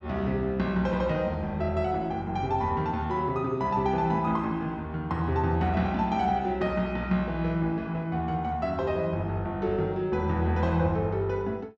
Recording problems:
treble cut off; nothing above 8 kHz

